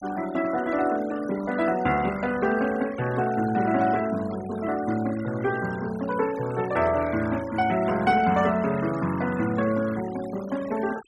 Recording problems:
noise reduction artefacts; signal-to-artefact ratio 17 dB

